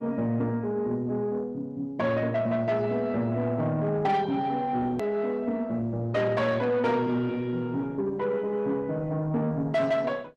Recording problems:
codec artefacts; Opus, log-spectral distance 2 dB, nothing above 13.1 kHz
distorted audio; soft clipping, signal-to-distortion ratio 12 dB
hard cut with a click; at 5 s

